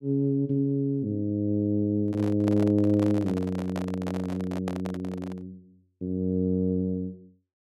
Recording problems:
handling noise; from 2 to 5.5 s; peak -5 dB vs average level

